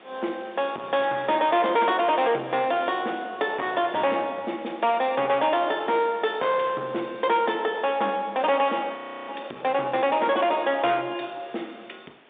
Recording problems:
phone line; 240 Hz to 3.7 kHz, G.711
distorted audio; soft clipping, signal-to-distortion ratio 11 dB
hiss; SNR 26 dB
frozen audio; at 9 s

